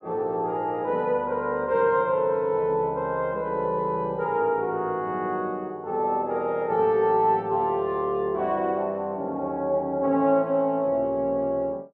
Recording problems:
none

